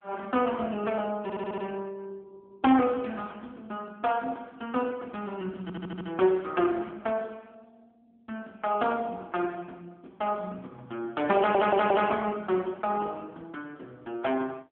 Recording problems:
telephone audio; 280 Hz to 3.4 kHz, AMR-NB
stutter; at 1 s, at 5.5 s and at 11 s

